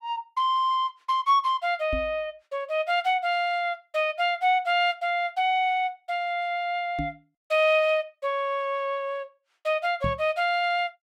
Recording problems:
microphone thump; at 2 s, at 7 s and at 10 s; peak -2 dB vs average level

